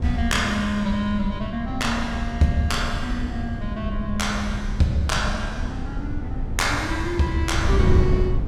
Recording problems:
wind on the microphone; below 120 Hz, SNR 3 dB

